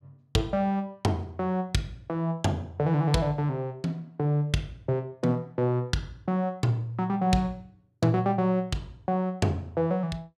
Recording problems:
none

